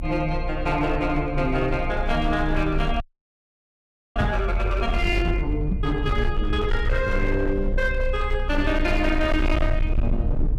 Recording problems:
distortion; hard clipping, signal-to-distortion ratio 11 dB
mains hum; 60 Hz, harmonics up to 840 Hz, SNR 18 dB
rumble; below 62 Hz, strongest tone 28 Hz, SNR 3 dB
audio freezing; at 3 s for 1 s
microphone bump; at 4 s and at 5.5 s; peak +4 dB vs average level

